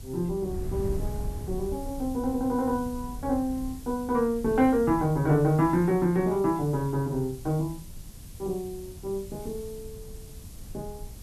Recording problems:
background hiss; SNR 22 dB
wind noise; below 110 Hz, SNR 14 dB

